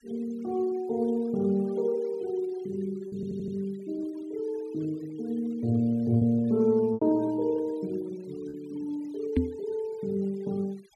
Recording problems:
noise reduction artefacts; signal-to-artefact ratio 27 dB
lost packets; 1.9% of the sound replaced, filled with repeated pitch periods
audio stuttering; at 3 s
knock on the microphone; at 9.5 s; peak +7 dB vs average level

